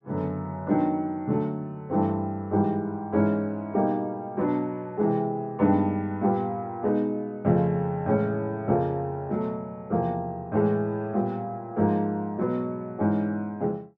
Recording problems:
none

